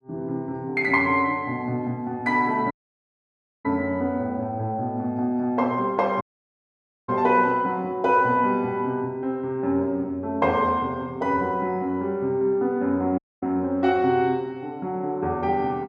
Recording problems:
audio cutting out; at 2.5 s for 1 s, at 6 s for 1 s and at 13 s

